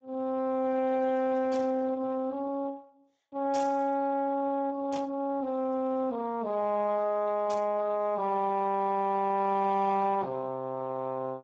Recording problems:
lossy codec; Speex, log-spectral distance 2 dB
distortion; soft clipping, signal-to-distortion ratio 9 dB
static burst; 4 times, first at 1.5 s; peak -8 dB vs average level

